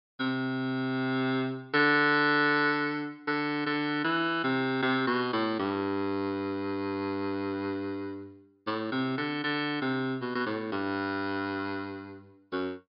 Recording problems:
low-pass filter; nothing above 5.5 kHz

